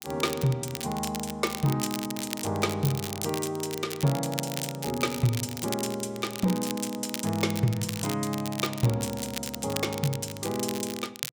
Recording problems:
crackling; vinyl, SNR 8 dB

